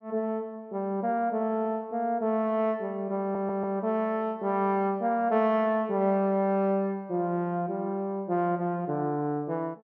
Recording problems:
audio stuttering; at 3 s

